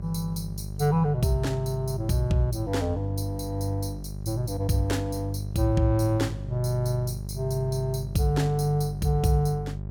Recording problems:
hum; 50 Hz, harmonics up to 600 Hz, SNR 9 dB

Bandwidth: 17.5 kHz